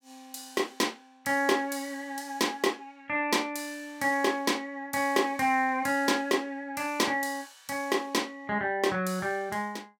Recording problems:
none

